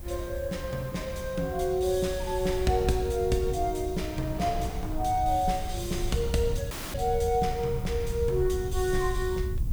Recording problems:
background hiss; slope +2 dB per octave, SNR 21 dB
rumble; below 84 Hz, SNR 7 dB
wind noise; below 890 Hz, SNR 22 dB
audio cutting out; at 6.5 s

